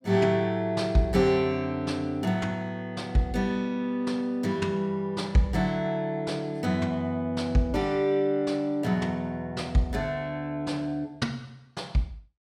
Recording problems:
none

